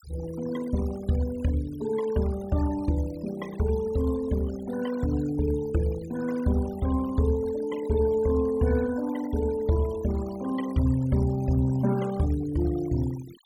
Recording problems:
denoising artefacts; signal-to-artefact ratio 17 dB

